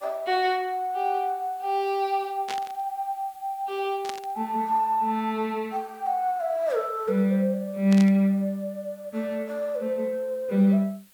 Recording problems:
hiss; slope 0 dB per octave, SNR 29 dB
burst of static; at 2.5 s, at 4 s and at 8 s; peak -4 dB vs average level

